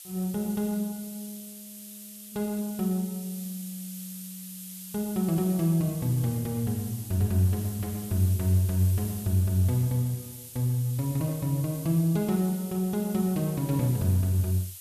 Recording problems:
hiss; slope +5 dB per octave, SNR 14 dB

